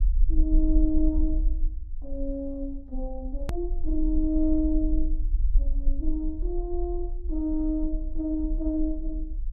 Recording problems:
rumble; below 42 Hz, strongest tone 22 Hz, SNR 1 dB
click at an edit; at 3.5 s

